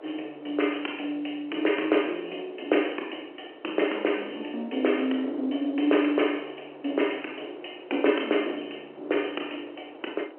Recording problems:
telephone audio; 260 Hz to 3.1 kHz, G.711
wind on the microphone; below 710 Hz, SNR 19 dB

